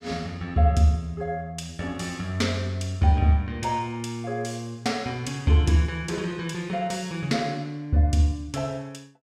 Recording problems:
none

